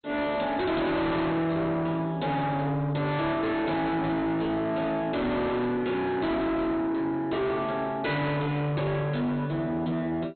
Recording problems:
lossy codec; MP2, log-spectral distance 2 dB, nothing above 4.2 kHz
distorted audio; soft clipping, signal-to-distortion ratio 6 dB

